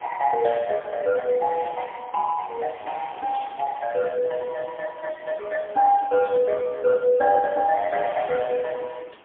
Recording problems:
phone line; 260 Hz to 3 kHz, AMR-NB, then MP3
wind on the microphone; below 2.4 kHz, SNR 22 dB

